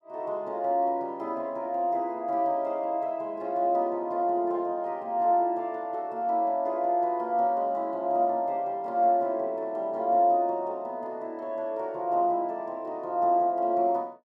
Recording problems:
none

